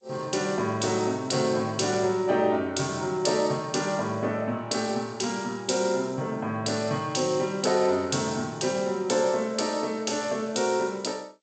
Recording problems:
lossy codec; G.722, log-spectral distance 7 dB, nothing above 7.8 kHz

